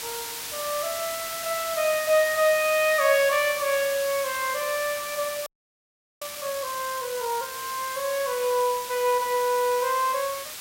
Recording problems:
hiss; slope +1 dB per octave, SNR 8 dB
frozen audio; at 5.5 s for 1 s

